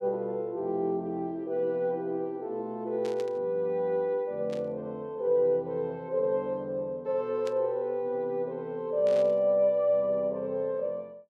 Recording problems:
static burst; 4 times, first at 3 s; peak -11 dB vs average level

